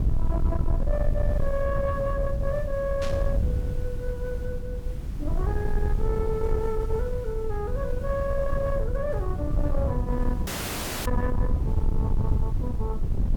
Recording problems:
distorted audio; soft clipping, signal-to-distortion ratio 11 dB
background hiss; slope -3 dB per octave, SNR 22 dB
rumble; below 88 Hz, SNR -2 dB
burst of static; at 3 s; peak -3 dB vs average level
dropout; at 10 s for 0.5 s

